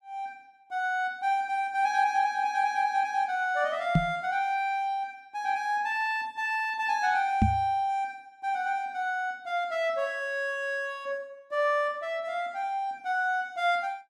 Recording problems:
microphone bump; at 4 s and at 7.5 s; peak +9 dB vs average level

